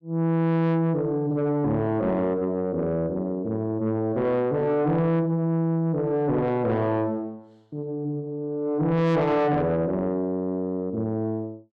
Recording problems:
distorted audio; soft clipping, signal-to-distortion ratio 10 dB

